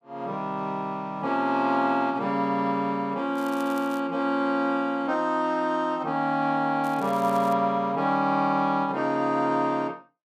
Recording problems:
crackling; at 3.5 s and at 7 s; loose cable, SNR 23 dB

